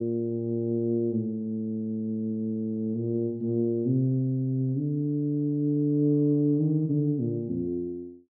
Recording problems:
treble cut off; nothing above 5.5 kHz

